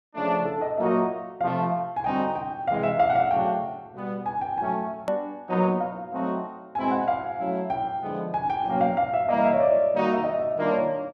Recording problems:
edit click; at 5 s

